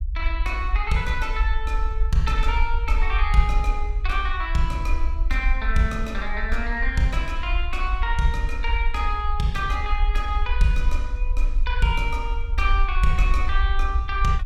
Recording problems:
rumble; below 52 Hz, SNR -1 dB

